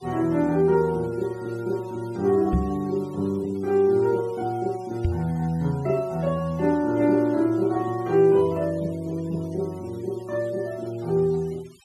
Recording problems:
noise reduction artefacts; signal-to-artefact ratio 26 dB
microphone bump; at 2.5 s and at 5 s; peak +5 dB vs average level

